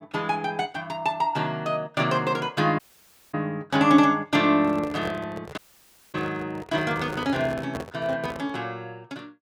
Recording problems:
dropout; at 3 s for 0.5 s and at 5.5 s for 0.5 s
handling noise; from 4.5 to 8.5 s; peak -5 dB vs average level

